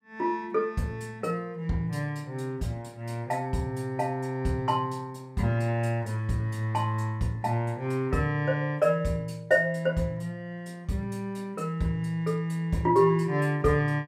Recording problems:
none

